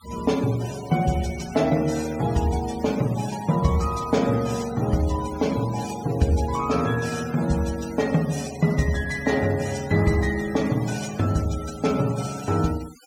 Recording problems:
noise reduction artefacts; signal-to-artefact ratio 16 dB

